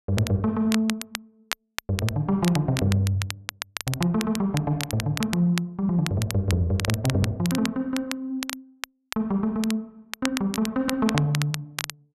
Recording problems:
crackle; vinyl, SNR 9 dB

